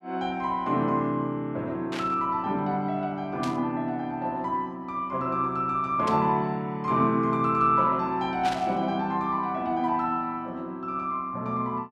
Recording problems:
burst of static; 4 times, first at 2 s; peak -5 dB vs average level

